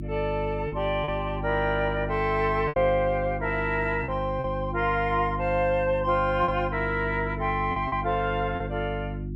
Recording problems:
electrical hum; 50 Hz, harmonics up to 350 Hz, SNR 7 dB
lost packets; 4% of the sound replaced, filled with repeated pitch periods

